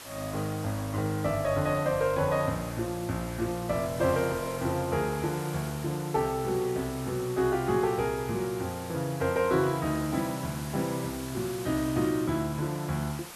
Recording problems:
hiss; slope -1 dB per octave, SNR 14 dB

